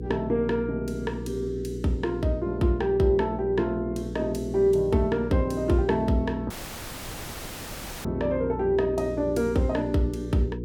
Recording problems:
electrical hum; 60 Hz, harmonics up to 480 Hz, SNR 9 dB
audio cutting out; at 6.5 s for 1.5 s

